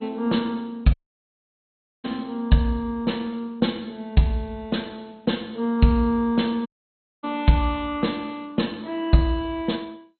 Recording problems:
lossy codec; MP2, log-spectral distance 3 dB, nothing above 4.2 kHz
dropout; at 1 s for 1 s and at 6.5 s for 0.5 s

